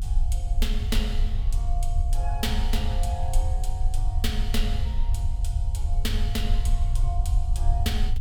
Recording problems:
low-frequency rumble; below 62 Hz, strongest tone 28 Hz, SNR -7 dB

